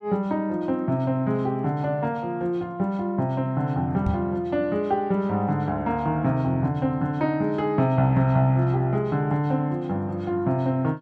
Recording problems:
microphone bump; at 4 s; peak +2 dB vs average level

